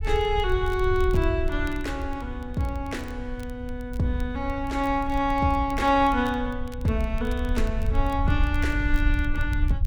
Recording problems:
low-frequency rumble; below 72 Hz, SNR 5 dB
crackling; vinyl, SNR 25 dB

